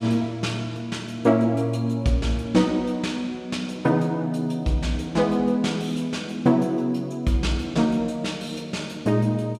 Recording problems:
none

